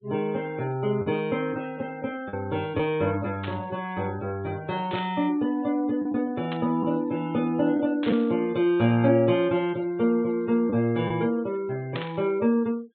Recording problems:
treble cut off; nothing above 4 kHz
denoising artefacts; signal-to-artefact ratio 24 dB
packet loss; 1.7% of the sound replaced, filled with the last packet
static burst; 5 times, first at 3.5 s; peak -5 dB vs average level

